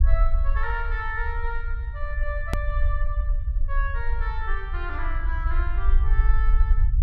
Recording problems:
rumble; below 50 Hz, SNR -7 dB
edit click; at 2.5 s

